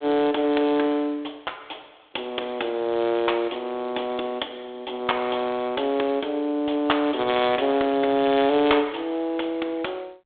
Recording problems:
phone line; 260 Hz to 3.6 kHz, G.726

